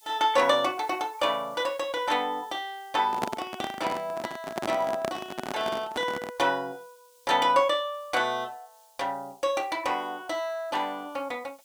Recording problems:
background hiss; SNR 28 dB
microphone handling noise; from 3 to 6.5 s; peak +3 dB vs average level

